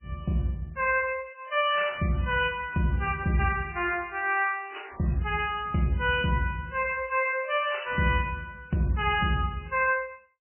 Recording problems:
lossy compression; MP3, log-spectral distance 4 dB, nothing above 2.6 kHz

